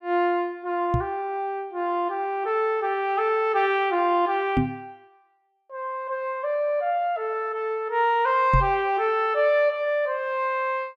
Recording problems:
microphone bump; at 1 s, at 4.5 s and at 8.5 s; peak +5 dB vs average level

